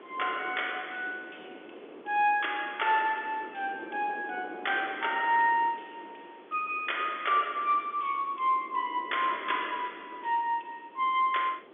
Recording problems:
telephone audio; 280 Hz to 3.5 kHz, G.711
background hiss; SNR 29 dB
wind noise; below 570 Hz, SNR 19 dB

